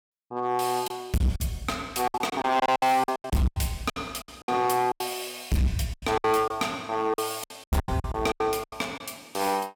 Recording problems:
distortion; hard clipping, signal-to-distortion ratio 7 dB
lost packets; 15% of the sound replaced, filled with silence

